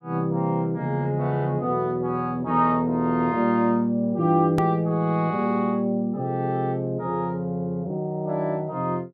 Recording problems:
treble cut off; nothing above 5.3 kHz
hard cut with a click; at 4.5 s

